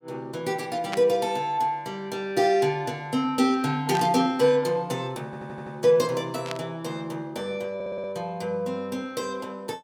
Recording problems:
burst of static; at 1 s, at 4 s and at 6.5 s; peak -2 dB vs average level
audio stuttering; at 5.5 s and at 8 s

